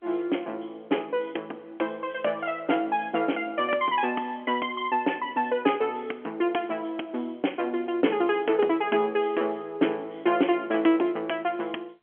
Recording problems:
phone line; 220 Hz to 3.3 kHz, G.711

